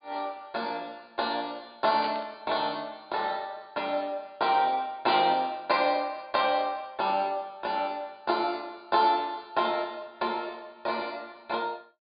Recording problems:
treble missing; nothing above 4.8 kHz
burst of static; at 2 s; peak -6 dB vs average level

